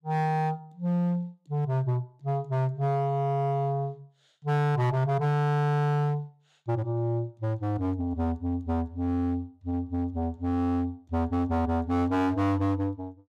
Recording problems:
distortion; hard clipping, uneven, signal-to-distortion ratio 8 dB

